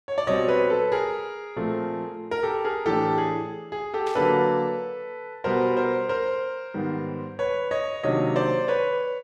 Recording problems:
static burst; at 4 s; peak -10 dB vs average level

